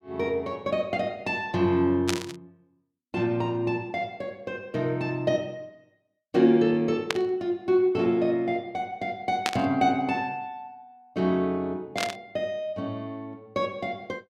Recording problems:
static burst; 4 times, first at 2 s; peak +5 dB vs average level

